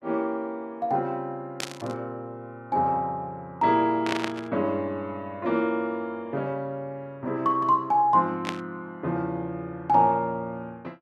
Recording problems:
static burst; at 1.5 s, at 4 s and at 8.5 s; peak +2 dB vs average level

